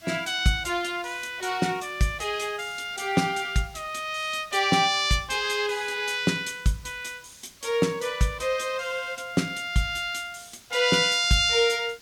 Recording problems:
hiss; SNR 25 dB

